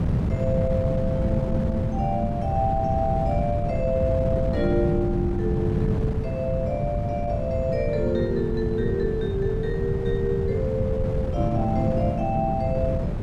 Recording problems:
wind on the microphone; below 200 Hz, SNR 0 dB

